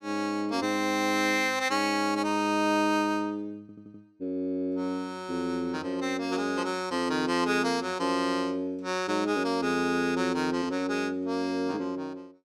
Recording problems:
audio stuttering; at 3.5 s

